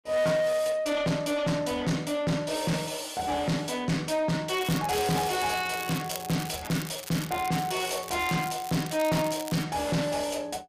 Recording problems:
distorted audio; soft clipping, signal-to-distortion ratio 7 dB
crackling; from 4.5 to 9.5 s; loose cable, SNR 12 dB

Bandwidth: 15 kHz